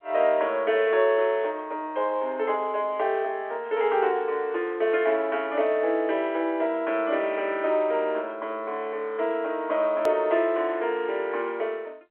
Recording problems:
telephone audio; 320 Hz to 3.4 kHz, G.711
hard cut with a click; at 10 s

